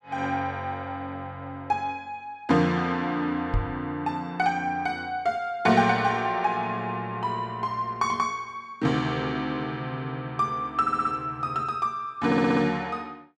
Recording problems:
knock on the microphone; at 3.5 s; peak +3 dB vs average level
audio stuttering; at 11 s and at 12 s

